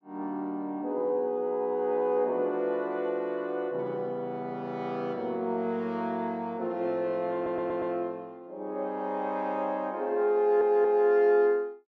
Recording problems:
stutter; at 7.5 s and at 10 s

